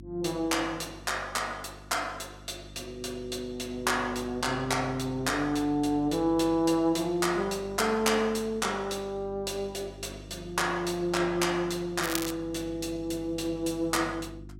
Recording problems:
hum; 50 Hz, harmonics up to 350 Hz, SNR 18 dB
crackling; at 12 s; loose cable, SNR 6 dB

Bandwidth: 16 kHz